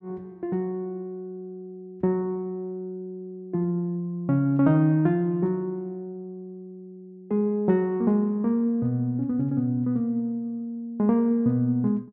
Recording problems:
none

